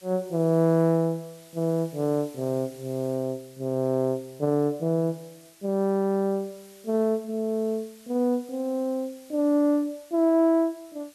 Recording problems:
background hiss; slope +1 dB per octave, SNR 26 dB

